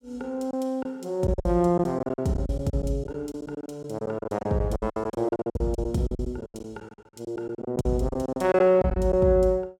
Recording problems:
packet loss; 17% of the sound replaced, filled with silence

